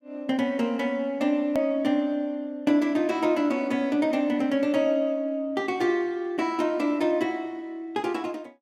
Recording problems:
hard cut with a click; at 1.5 s

